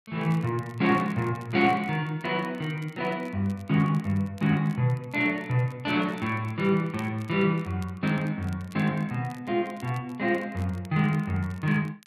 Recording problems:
crackling; vinyl, SNR 28 dB

